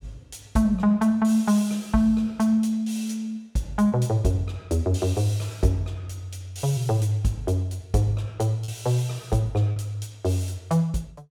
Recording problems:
packet loss; 1.1% of the sound replaced, filled with repeated pitch periods

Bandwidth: 17 kHz